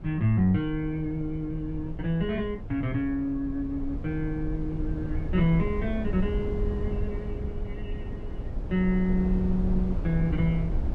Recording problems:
rumble; below 98 Hz, SNR 6 dB

